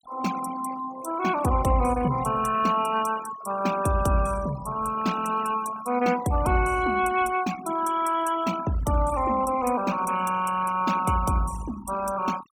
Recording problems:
denoising artefacts; signal-to-artefact ratio 14 dB

